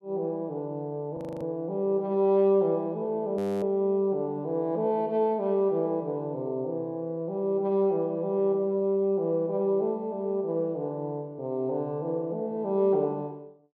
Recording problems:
audio freezing; at 1 s and at 3.5 s

